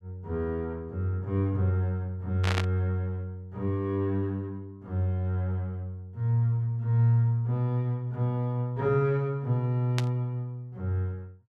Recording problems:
static burst; at 2.5 s and at 10 s; peak +1 dB vs average level

